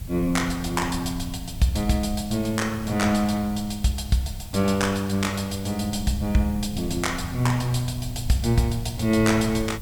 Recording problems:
hiss; SNR 20 dB
rumble; below 120 Hz, SNR 12 dB

